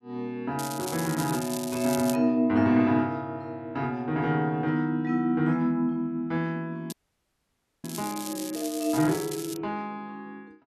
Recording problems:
crackling; from 0.5 to 2 s and from 7 to 9.5 s; loose cable, SNR 11 dB
audio freezing; at 7 s for 1 s

